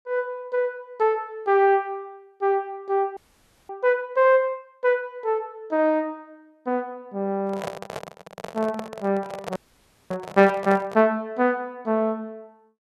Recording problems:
frozen audio; at 3 s for 0.5 s and at 9.5 s for 0.5 s
microphone handling noise; from 7.5 to 11 s; peak -4 dB vs average level

